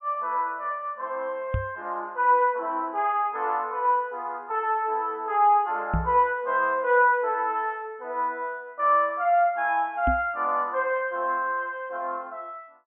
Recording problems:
treble cut off; nothing above 3.3 kHz
knock on the microphone; at 1.5 s, at 6 s and at 10 s; peak +2 dB vs average level

